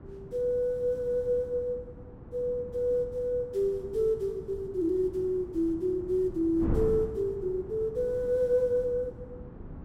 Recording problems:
wind on the microphone; below 270 Hz, SNR 13 dB

